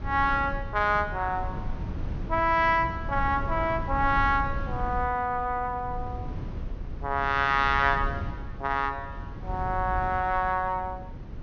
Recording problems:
treble missing; nothing above 6.6 kHz
wind on the microphone; below 130 Hz, SNR 10 dB

